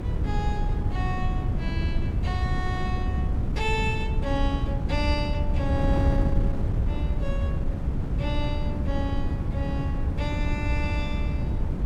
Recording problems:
low-frequency rumble; below 70 Hz, SNR 3 dB
wind noise; below 140 Hz, SNR -5 dB

